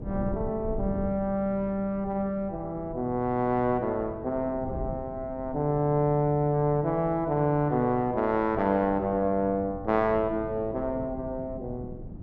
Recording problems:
wind on the microphone; below 230 Hz, SNR 14 dB

